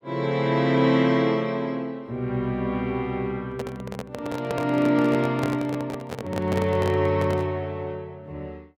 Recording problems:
microphone handling noise; from 3.5 to 7.5 s; peak -1 dB vs average level

